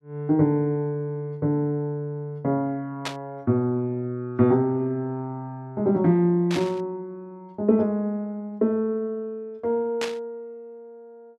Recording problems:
static burst; at 3 s, at 6.5 s and at 10 s; peak -1 dB vs average level

